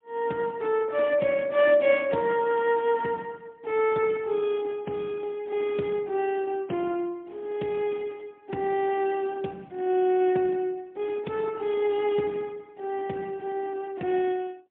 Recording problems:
telephone audio; 190 Hz to 3.5 kHz, AMR-NB, then MP3

